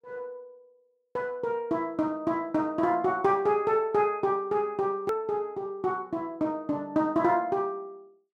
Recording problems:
click at an edit; at 5 s

